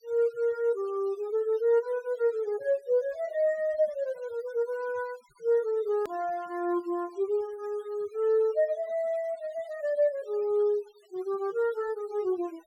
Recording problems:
noise reduction artefacts; signal-to-artefact ratio 27 dB
edit click; at 6 s

